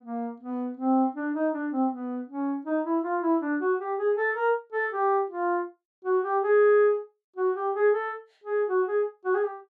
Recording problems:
none

